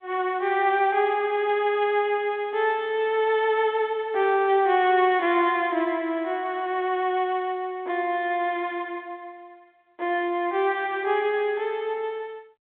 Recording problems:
phone line; 280 Hz to 3.4 kHz, G.726

